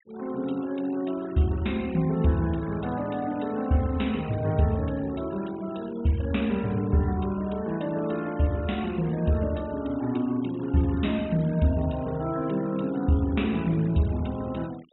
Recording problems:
low-pass filter; nothing above 3.8 kHz
denoising artefacts; signal-to-artefact ratio 22 dB

